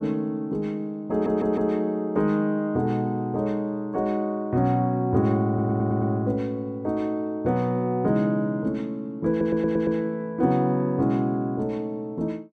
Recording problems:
audio stuttering; at 1 s, at 5.5 s and at 9.5 s

